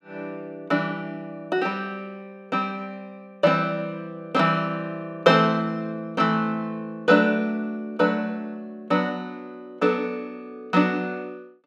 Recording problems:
none

